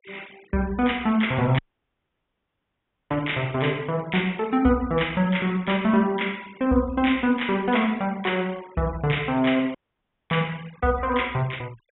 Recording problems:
treble cut off; nothing above 3.7 kHz
denoising artefacts; signal-to-artefact ratio 24 dB
dropout; at 1.5 s for 1.5 s and at 10 s for 0.5 s

